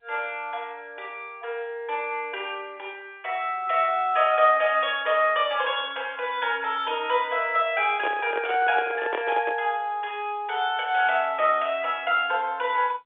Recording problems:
telephone audio; 340 Hz to 3.5 kHz, G.711
handling noise; from 8 to 9.5 s; peak -1 dB vs average level

